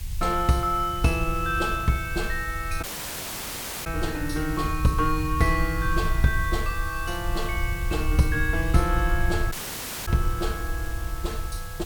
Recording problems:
hiss; SNR 15 dB
low-frequency rumble; below 72 Hz, SNR 5 dB
dropout; at 3 s for 1 s and at 9.5 s for 0.5 s

